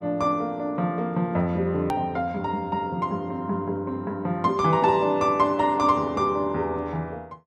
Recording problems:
edit click; at 2 s

